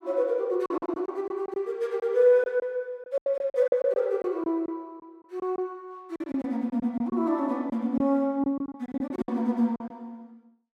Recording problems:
lost packets; 11% of the sound replaced, filled with silence

